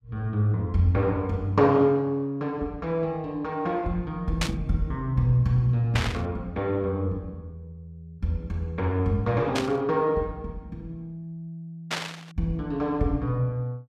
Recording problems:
burst of static; 4 times, first at 4.5 s; peak +3 dB vs average level

